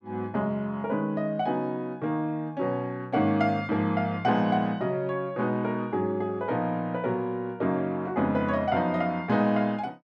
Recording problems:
none

